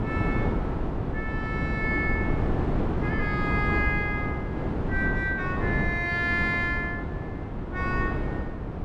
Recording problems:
wind noise; below 370 Hz, SNR 0 dB

